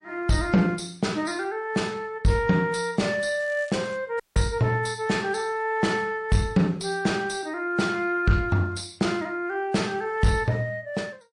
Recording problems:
lossy compression; MP3, log-spectral distance 2 dB, nothing above 10.1 kHz
distorted audio; soft clipping, signal-to-distortion ratio 11 dB
crackle; at 3.5 s; loose cable, SNR 25 dB
dropout; at 4 s

